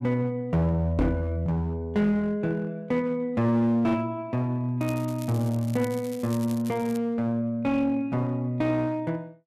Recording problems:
distorted audio; hard clipping, uneven, signal-to-distortion ratio 11 dB
microphone thump; at 1 s; peak +6 dB vs average level
crackling; from 5 to 7 s; loose cable, SNR 19 dB

